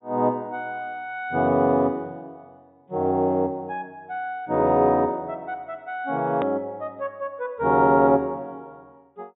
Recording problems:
low-pass filter; nothing above 4 kHz
click at an edit; at 6.5 s

